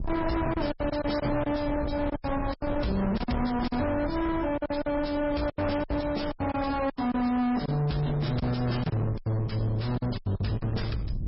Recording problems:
codec artefacts; MP3, log-spectral distance 4 dB, nothing above 5.5 kHz
distorted audio; soft clipping, signal-to-distortion ratio 8 dB
rumble; below 330 Hz, SNR 7 dB
lost packets; 12% of the sound replaced, filled with silence

